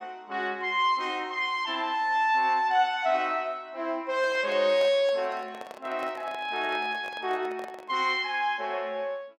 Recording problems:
microphone handling noise; from 4 to 8 s; peak -6 dB vs average level

